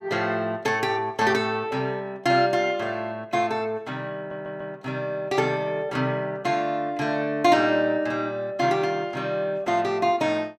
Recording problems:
stutter; at 4 s

